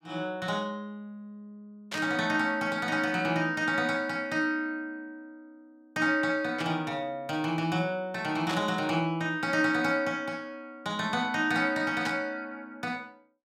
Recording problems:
static burst; 4 times, first at 2 s; peak -2 dB vs average level

